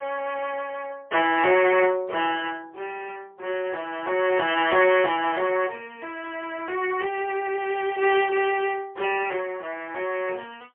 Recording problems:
telephone audio; 320 Hz to 3.3 kHz, AMR-NB, then MP3

